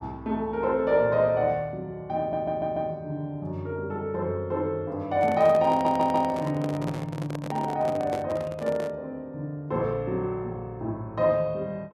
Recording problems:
stutter; at 2 s and at 5.5 s
handling noise; from 5 to 9 s; peak -4 dB vs average level

